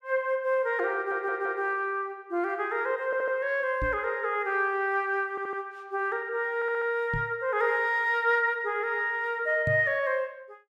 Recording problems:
audio stuttering; 4 times, first at 1 s
microphone bump; at 4 s, at 7 s and at 9.5 s; peak -1 dB vs average level

